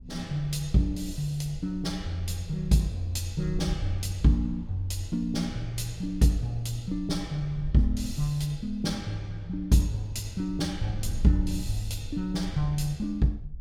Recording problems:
wind on the microphone; below 70 Hz, SNR 11 dB

